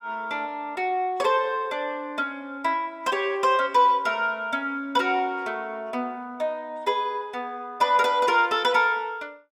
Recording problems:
none

